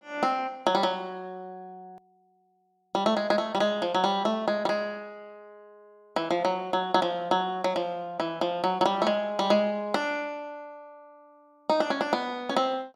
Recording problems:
hard cut with a click; at 2 s

